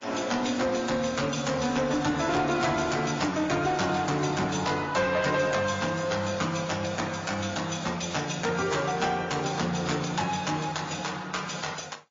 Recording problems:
lossy codec; AAC, then MP3, log-spectral distance 8 dB, nothing above 6.2 kHz
distortion; soft clipping, signal-to-distortion ratio 11 dB

